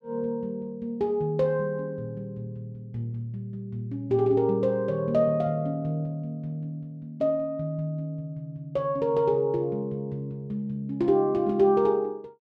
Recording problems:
none

